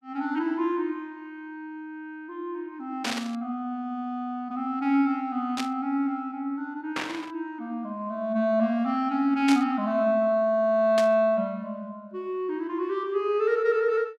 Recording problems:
burst of static; 5 times, first at 3 s; peak 0 dB vs average level

